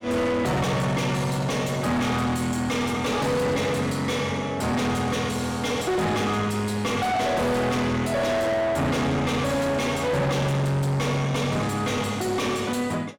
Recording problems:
distortion; soft clipping, signal-to-distortion ratio 6 dB

